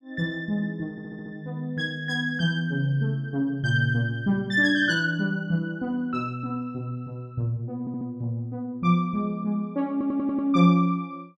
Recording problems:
stutter; at 1 s, at 8 s and at 10 s

